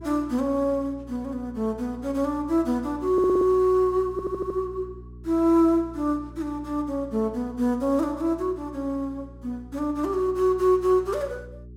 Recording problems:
hum; 60 Hz, harmonics up to 420 Hz, SNR 19 dB
stutter; at 3 s and at 4 s

